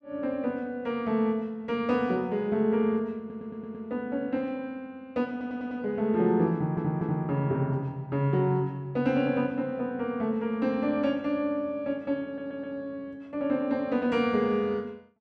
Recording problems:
stutter; 4 times, first at 3 s

